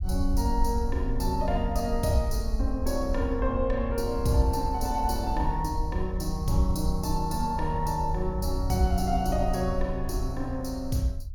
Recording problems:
low-frequency rumble; below 70 Hz, SNR 4 dB

